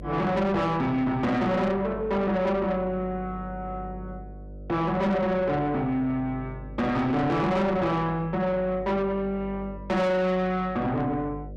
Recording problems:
distortion; soft clipping, signal-to-distortion ratio 8 dB
mains hum; 50 Hz, harmonics up to 600 Hz, SNR 15 dB

